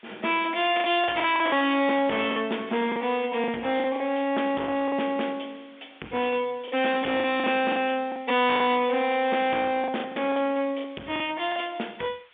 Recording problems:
phone line; 190 Hz to 3.6 kHz, G.711
distortion; hard clipping, signal-to-distortion ratio 7 dB
background hiss; SNR 29 dB
packet loss; 8% of the sound replaced, filled with the last packet

